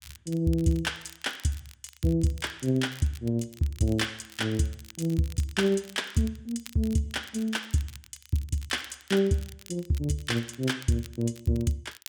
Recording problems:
crackling; vinyl, SNR 20 dB

